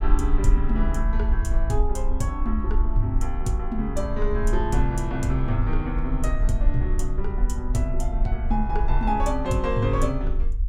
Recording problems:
low-frequency rumble; below 46 Hz, SNR 0 dB

